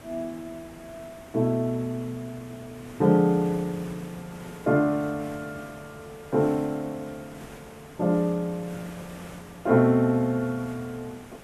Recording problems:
hiss; SNR 19 dB

